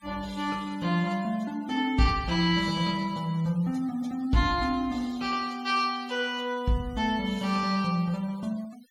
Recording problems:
noise reduction artefacts; signal-to-artefact ratio 23 dB

